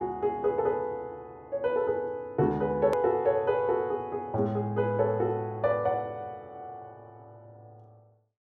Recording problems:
hard cut with a click; at 3 s

